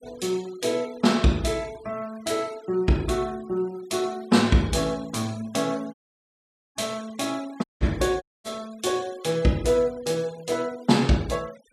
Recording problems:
noise reduction artefacts; signal-to-artefact ratio 22 dB
audio cutting out; at 6 s for 1 s, at 7.5 s and at 8 s

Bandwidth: 13.5 kHz